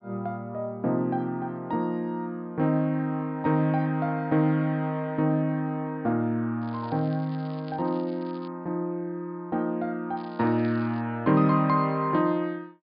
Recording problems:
low-pass filter; nothing above 5 kHz
crackle; from 6.5 to 8.5 s and at 10 s; loose cable, SNR 28 dB

